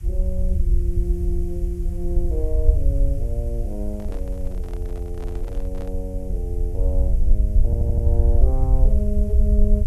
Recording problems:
background hiss; SNR 23 dB
rumble; below 66 Hz, SNR -8 dB
handling noise; from 4 to 6 s; peak -6 dB vs average level
stutter; at 7.5 s

